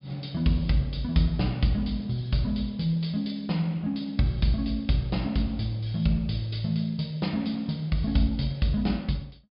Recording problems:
treble missing; nothing above 5.5 kHz

